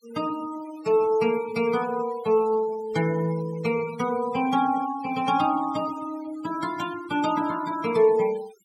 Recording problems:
denoising artefacts; signal-to-artefact ratio 18 dB

